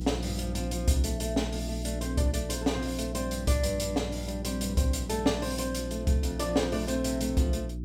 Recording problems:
hum; 60 Hz, harmonics up to 360 Hz, SNR 6 dB

